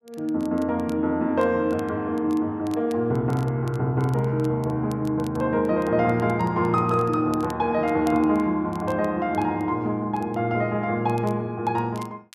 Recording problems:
crackle; vinyl, SNR 27 dB

